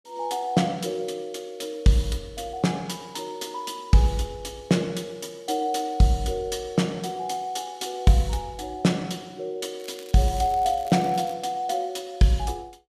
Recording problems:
crackle; from 10 to 11 s; loose cable, SNR 22 dB

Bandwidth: 14.5 kHz